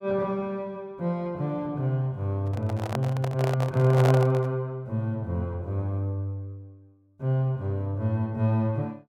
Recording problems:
microphone handling noise; from 2.5 to 4.5 s; peak +2 dB vs average level

